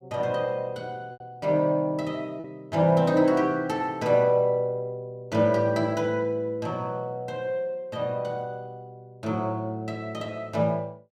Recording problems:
packet loss; 1.1% of the sound replaced, filled with repeated pitch periods

